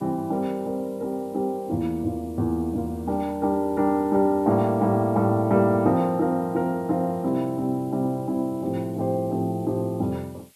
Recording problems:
background hiss; SNR 30 dB

